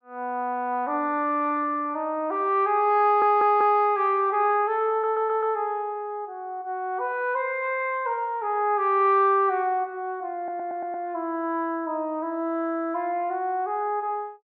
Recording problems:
stutter; at 3 s, at 5 s and at 10 s

